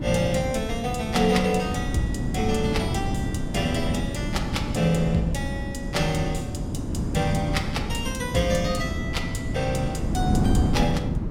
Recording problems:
wind noise; below 250 Hz, SNR 2 dB

